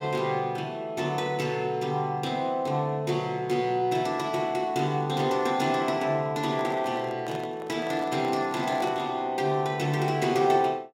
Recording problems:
microphone handling noise; from 6.5 to 9 s; peak -8 dB vs average level

